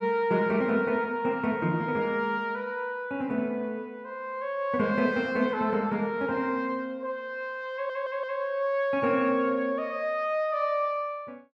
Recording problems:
stutter; at 7.5 s

